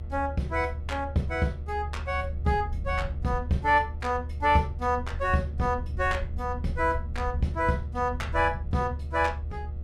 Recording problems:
hum; 60 Hz, harmonics up to 2 kHz, SNR 25 dB
low-frequency rumble; below 76 Hz, strongest tone 74 Hz, SNR 7 dB

